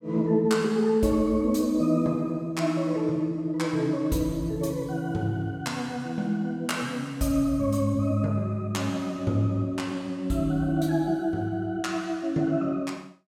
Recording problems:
none

